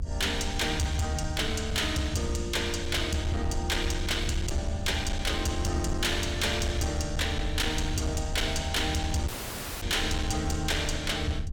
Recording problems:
distortion; hard clipping, signal-to-distortion ratio 11 dB
rumble; below 80 Hz, SNR 6 dB
dropout; at 9.5 s for 0.5 s

